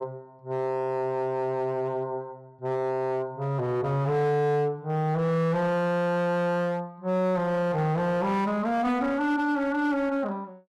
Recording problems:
distortion; hard clipping, signal-to-distortion ratio 10 dB

